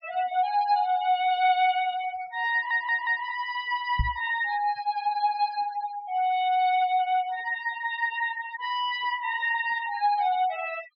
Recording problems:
low-pass filter; nothing above 5.5 kHz
noise reduction artefacts; signal-to-artefact ratio 15 dB
stutter; at 2.5 s
knock on the microphone; at 4 s; peak +3 dB vs average level

